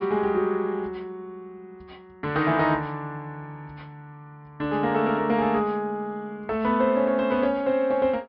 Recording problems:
low-pass filter; nothing above 5.4 kHz

